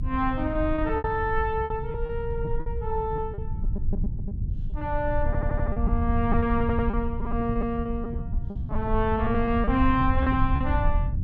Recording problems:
low-frequency rumble; below 96 Hz, SNR 3 dB
packet loss; 11% of the sound replaced, filled with repeated pitch periods
stutter; at 5.5 s and at 6.5 s

